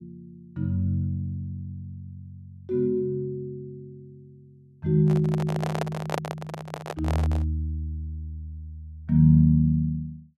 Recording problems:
handling noise; from 5 to 7.5 s; peak 0 dB vs average level

